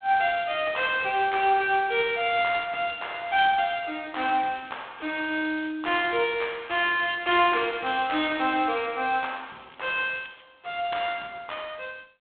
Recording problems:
phone line; 170 Hz to 3.7 kHz, G.726
crackling; 4 times, first at 2 s; loose cable, SNR 27 dB

